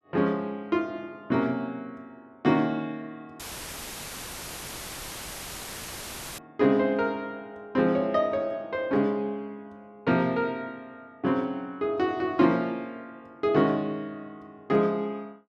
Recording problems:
audio cutting out; at 3.5 s for 3 s; filled with static

